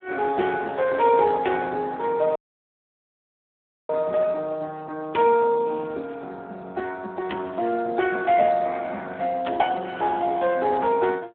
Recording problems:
phone line; 280 Hz to 3 kHz, Speex
dropout; at 2.5 s for 1.5 s

